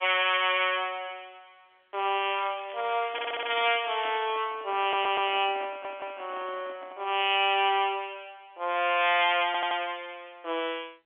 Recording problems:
phone line; 260 Hz to 3.5 kHz, G.711
crackling; from 2.5 to 4 s; loose cable, SNR 20 dB
microphone handling noise; from 3 to 7 s; peak -13 dB vs average level
stutter; 4 times, first at 3 s

